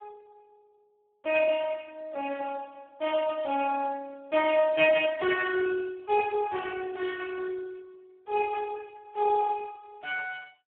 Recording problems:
telephone audio; 320 Hz to 3.1 kHz, Speex

